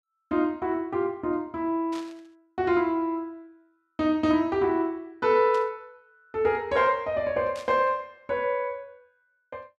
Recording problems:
burst of static; at 2 s, at 5.5 s and at 7.5 s; peak -12 dB vs average level

